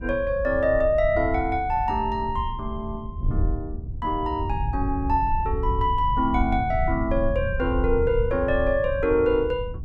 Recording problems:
wind on the microphone; below 90 Hz, SNR 7 dB

